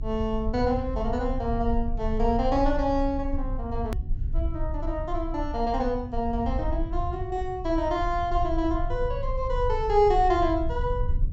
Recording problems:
low-pass filter; nothing above 8 kHz
rumble; below 66 Hz, strongest tone 28 Hz, SNR 6 dB
click at an edit; at 4 s

